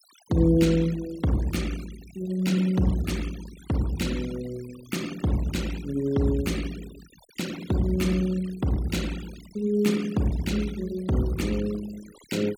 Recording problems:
noise reduction artefacts; signal-to-artefact ratio 18 dB

